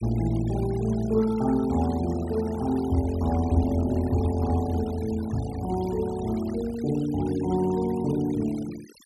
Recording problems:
noise reduction artefacts; signal-to-artefact ratio 19 dB

